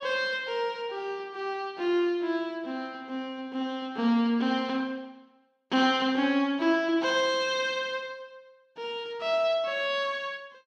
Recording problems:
none

